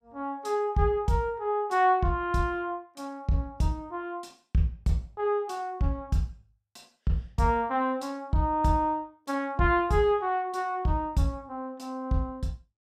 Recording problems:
none

